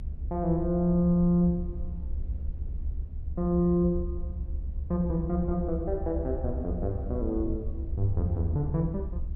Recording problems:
rumble; below 72 Hz, SNR 7 dB

